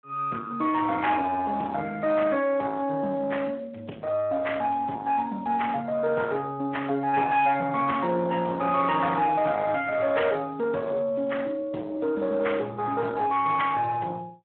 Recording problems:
phone line; 240 Hz to 2.8 kHz, Speex
distorted audio; soft clipping, signal-to-distortion ratio 12 dB

